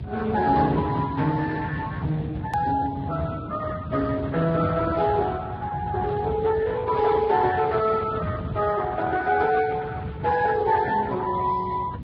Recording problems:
lossy compression; Speex, then Vorbis, log-spectral distance 4 dB
electrical hum; 60 Hz, harmonics up to 720 Hz, SNR 23 dB
low-frequency rumble; below 190 Hz, SNR 10 dB
hard cut with a click; at 2.5 s

